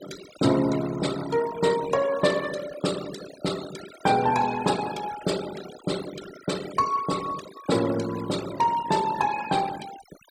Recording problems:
denoising artefacts; signal-to-artefact ratio 13 dB

